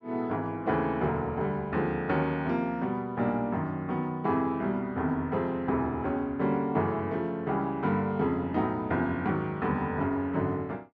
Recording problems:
none

